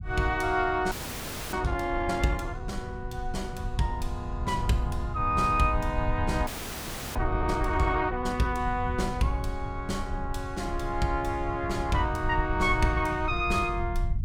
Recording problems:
low-frequency rumble; below 96 Hz, SNR 6 dB
audio freezing; at 1 s for 0.5 s and at 6.5 s for 0.5 s

